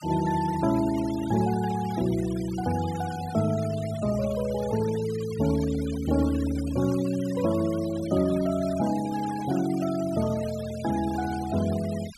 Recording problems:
denoising artefacts; signal-to-artefact ratio 16 dB

